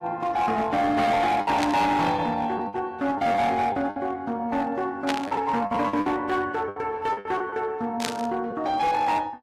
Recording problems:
codec artefacts; AAC, log-spectral distance 2 dB, nothing above 15.6 kHz
distortion; hard clipping, uneven, signal-to-distortion ratio 10 dB
lost packets; 8% of the sound replaced, filled with the last packet
burst of static; at 1.5 s, at 5 s and at 8 s; peak +2 dB vs average level

